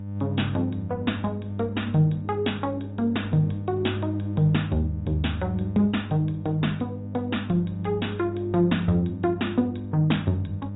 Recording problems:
treble missing; nothing above 3.8 kHz
codec artefacts; Opus, log-spectral distance 3 dB
electrical hum; 50 Hz, harmonics up to 600 Hz, SNR 7 dB

